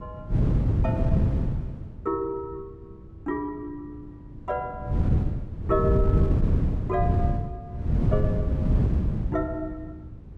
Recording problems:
wind noise; below 170 Hz, SNR -6 dB

